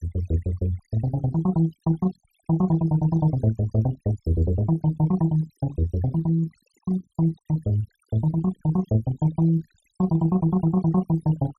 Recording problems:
noise reduction artefacts; signal-to-artefact ratio 21 dB

